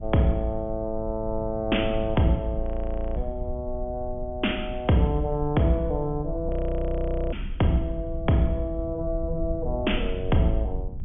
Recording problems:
low-pass filter; nothing above 3.4 kHz
low-frequency rumble; below 66 Hz, SNR 8 dB
frozen audio; at 2.5 s for 0.5 s and at 6.5 s for 1 s

